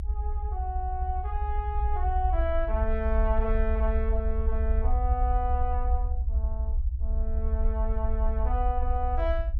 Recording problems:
rumble; below 66 Hz, SNR -4 dB

